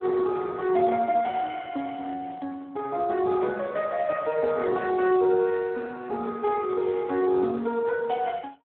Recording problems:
telephone audio; 240 Hz to 2.1 kHz, Speex

